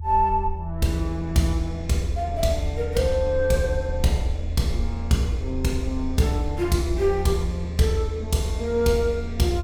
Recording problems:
rumble; below 80 Hz, strongest tone 78 Hz, SNR 7 dB

